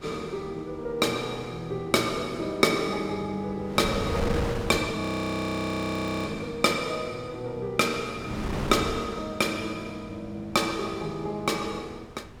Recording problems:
wind on the microphone; below 670 Hz, SNR 8 dB
audio freezing; at 5 s for 1.5 s

